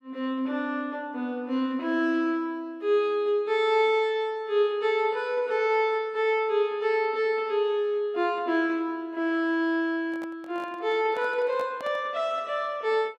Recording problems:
microphone handling noise; from 10 to 12 s; peak -10 dB vs average level

